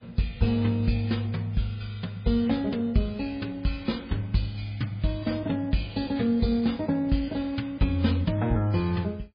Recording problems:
codec artefacts; MP3, log-spectral distance 3 dB, nothing above 4.8 kHz

